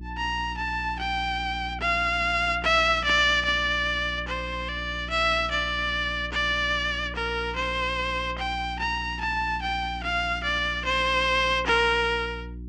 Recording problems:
electrical hum; 60 Hz, harmonics up to 360 Hz, SNR 14 dB

